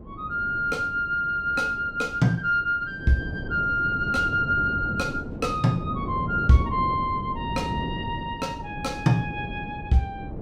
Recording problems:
wind noise; below 310 Hz, SNR 9 dB

